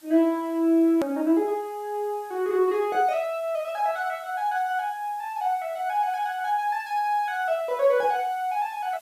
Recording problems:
hiss; slope 0 dB per octave, SNR 28 dB
edit click; at 1 s

